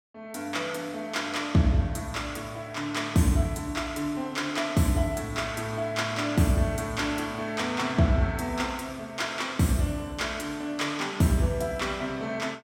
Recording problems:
none

